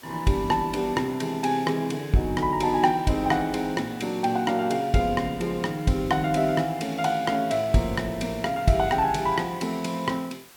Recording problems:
background hiss; slope -1 dB per octave, SNR 23 dB

